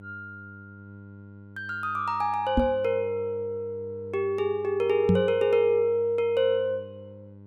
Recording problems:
electrical hum; 50 Hz, harmonics up to 1 kHz, SNR 20 dB
microphone thump; at 2.5 s and at 5 s; peak +6 dB vs average level

